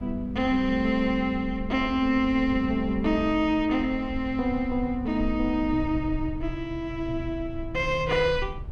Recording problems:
low-frequency rumble; below 82 Hz, SNR 12 dB

